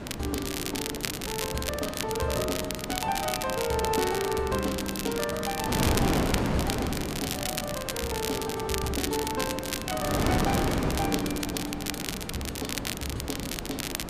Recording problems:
wind noise; below 680 Hz, SNR 1 dB
crackling; vinyl, SNR 2 dB

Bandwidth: 14.5 kHz